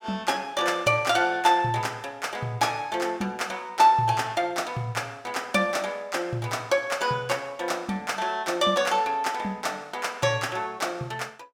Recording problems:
none

